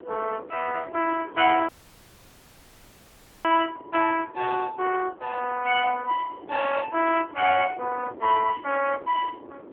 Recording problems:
telephone audio; 280 Hz to 3.3 kHz, AMR-NB
wind noise; below 520 Hz, SNR 18 dB
audio cutting out; at 1.5 s for 2 s

